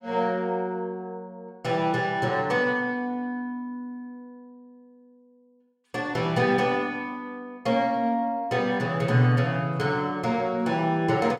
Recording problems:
none

